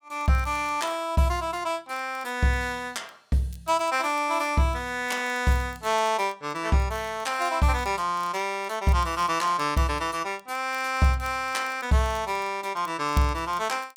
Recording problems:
crackle; vinyl, SNR 27 dB

